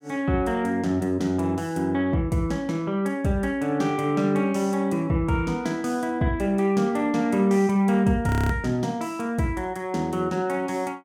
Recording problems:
frozen audio; at 8.5 s

